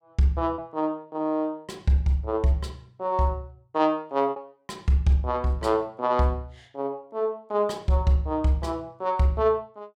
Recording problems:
lost packets; 1.2% of the sound replaced, filled with repeated pitch periods

